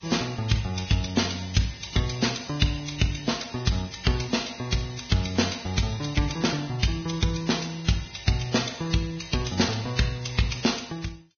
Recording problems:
lossy codec; Vorbis, log-spectral distance 7 dB, nothing above 6.3 kHz

